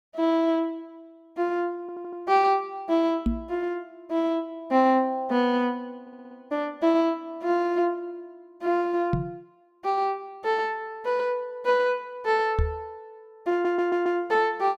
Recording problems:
audio stuttering; at 2 s, at 6 s and at 14 s
knock on the microphone; at 3.5 s, at 9 s and at 13 s; peak +4 dB vs average level

